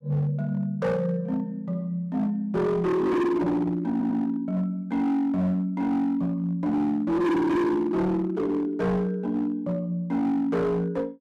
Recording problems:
distortion; hard clipping, signal-to-distortion ratio 8 dB
audio stuttering; at 4 s

